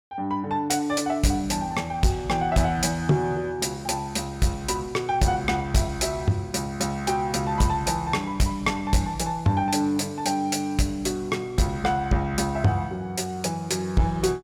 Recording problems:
distortion; soft clipping, signal-to-distortion ratio 12 dB

